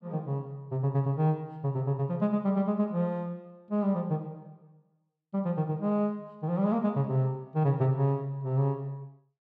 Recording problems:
none

